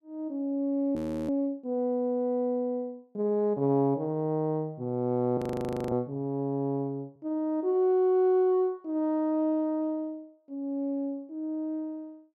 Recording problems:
audio freezing; at 1 s and at 5.5 s for 0.5 s

